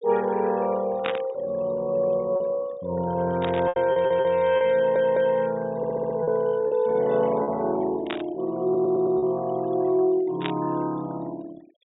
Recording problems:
low-pass filter; nothing above 4 kHz
denoising artefacts; signal-to-artefact ratio 23 dB
packet loss; 4% of the sound replaced, filled with repeated pitch periods
burst of static; 4 times, first at 1 s; peak -2 dB vs average level
audio stuttering; 4 times, first at 4 s

